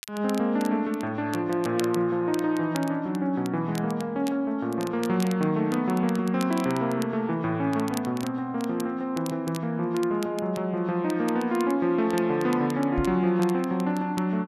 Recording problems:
crackling; vinyl, SNR 18 dB
knock on the microphone; at 13 s; peak -1 dB vs average level

